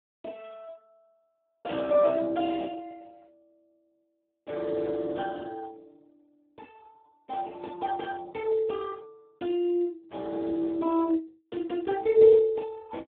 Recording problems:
phone line; 240 Hz to 2.2 kHz, Speex

